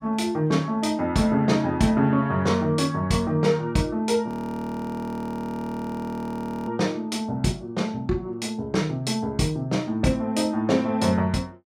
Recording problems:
audio freezing; at 4.5 s for 2.5 s

